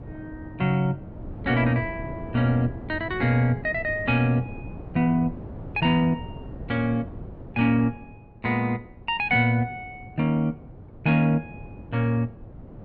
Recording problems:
wind on the microphone; below 290 Hz, SNR 15 dB

